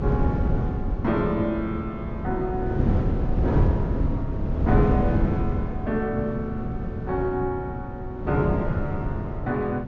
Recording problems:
treble cut off; nothing above 7.1 kHz
wind on the microphone; below 210 Hz, SNR -1 dB

